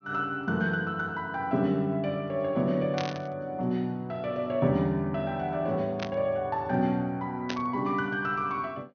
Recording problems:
low-pass filter; nothing above 6.4 kHz
static burst; at 3 s, at 6 s and at 7.5 s; peak -1 dB vs average level

